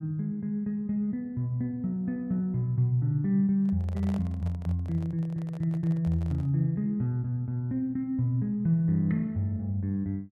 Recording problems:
microphone handling noise; from 3.5 to 6.5 s; peak -11 dB vs average level

